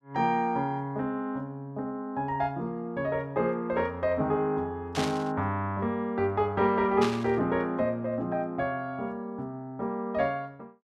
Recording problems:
static burst; at 5 s and at 7 s; peak 0 dB vs average level

